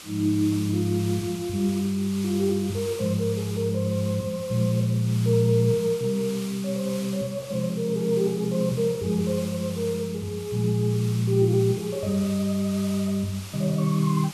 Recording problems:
hiss; SNR 15 dB

